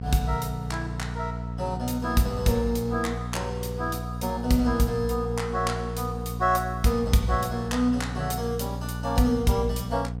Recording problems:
hum; 60 Hz, harmonics up to 720 Hz, SNR 6 dB

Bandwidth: 16 kHz